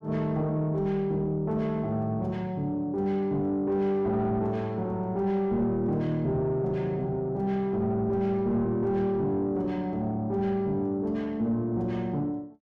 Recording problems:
distortion; soft clipping, signal-to-distortion ratio 11 dB

